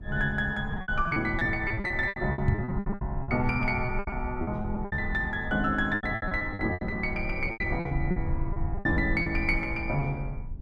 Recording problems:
low-frequency rumble; below 86 Hz, SNR 8 dB
lost packets; 17% of the sound replaced, filled with repeated pitch periods
knock on the microphone; at 2.5 s; peak +8 dB vs average level

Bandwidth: 12 kHz